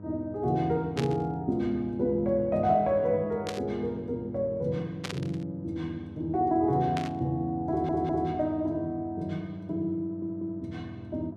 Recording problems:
hum; 50 Hz, harmonics up to 1 kHz, SNR 16 dB
static burst; 4 times, first at 1 s; peak -2 dB vs average level
audio stuttering; at 7.5 s and at 10 s

